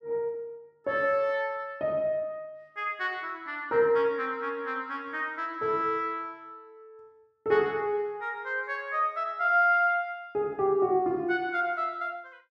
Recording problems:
none

